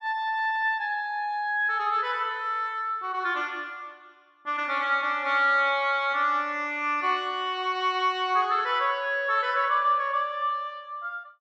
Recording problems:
none

